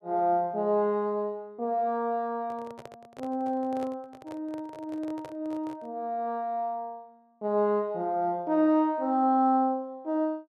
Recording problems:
handling noise; from 2.5 to 6 s; peak -10 dB vs average level

